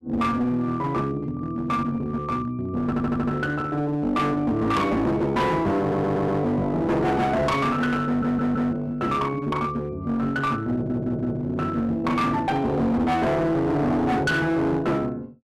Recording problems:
distorted audio; hard clipping, uneven, signal-to-distortion ratio 7 dB
stutter; 4 times, first at 3 s

